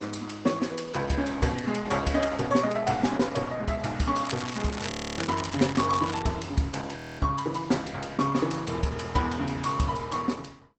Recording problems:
lossy compression; Opus, log-spectral distance 6 dB, nothing above 8 kHz
crackling; from 4.5 to 6 s; loose cable, SNR 9 dB
frozen audio; at 5 s and at 7 s

